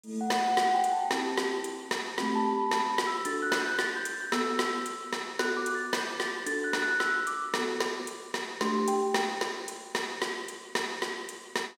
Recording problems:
none

